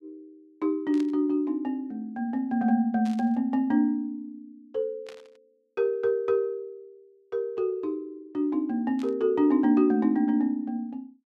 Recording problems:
static burst; 4 times, first at 1 s; peak -14 dB vs average level

